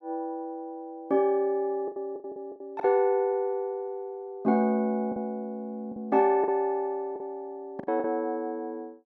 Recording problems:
packet loss; 7% of the sound replaced, filled with the last packet

